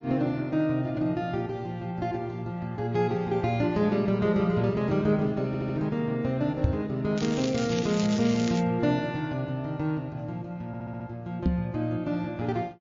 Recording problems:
codec artefacts; MP3, then MP3, log-spectral distance 2 dB, nothing above 6.3 kHz
stutter; at 5.5 s and at 11 s
microphone thump; at 6.5 s and at 11 s; peak +8 dB vs average level
crackling; from 7 to 8.5 s; loose cable, SNR 10 dB

